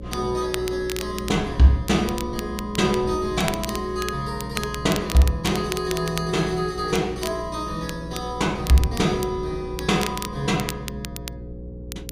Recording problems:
electrical hum; 60 Hz, harmonics up to 540 Hz, SNR 13 dB
wind on the microphone; below 210 Hz, SNR 17 dB
crackle; vinyl, SNR 12 dB

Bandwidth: 15 kHz